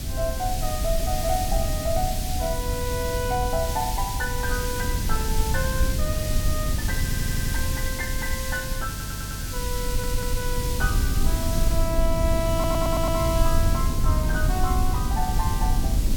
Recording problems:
hiss; SNR 3 dB
rumble; below 96 Hz, SNR -2 dB
audio stuttering; 4 times, first at 7 s

